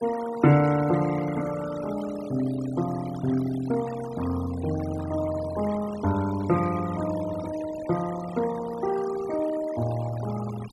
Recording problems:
denoising artefacts; signal-to-artefact ratio 14 dB

